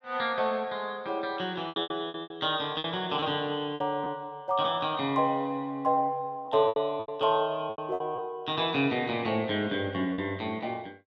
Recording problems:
packet loss; 8% of the sound replaced, filled with repeated pitch periods

